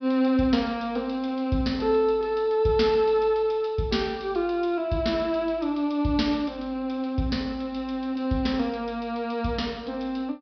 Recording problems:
low-pass filter; nothing above 5.5 kHz

